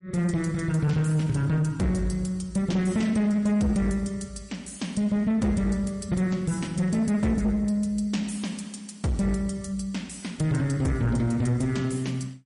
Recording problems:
lossy codec; MP3, log-spectral distance 2 dB, nothing above 10.4 kHz
distorted audio; soft clipping, signal-to-distortion ratio 12 dB

